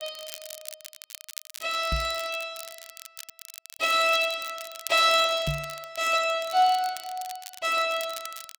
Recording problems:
crackle; vinyl, SNR 16 dB
microphone bump; at 2 s and at 5.5 s; peak -2 dB vs average level

